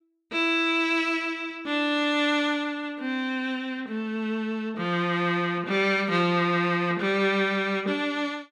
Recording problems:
none

